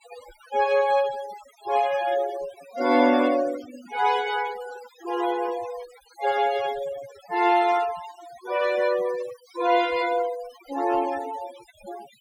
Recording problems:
denoising artefacts; signal-to-artefact ratio 14 dB

